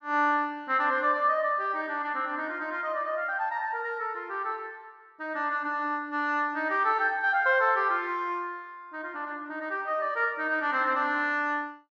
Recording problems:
none

